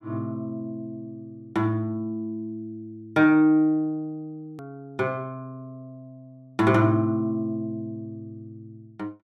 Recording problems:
edit click; at 4.5 s

